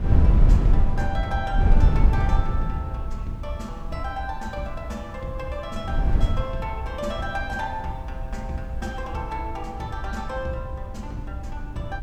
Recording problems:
background hiss; slope -2 dB per octave, SNR 29 dB
wind noise; below 80 Hz, SNR -6 dB

